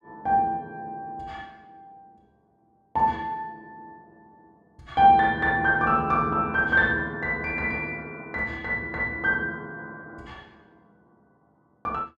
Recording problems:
none

